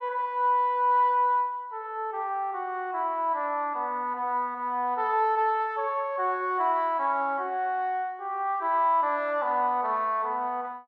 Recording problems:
none

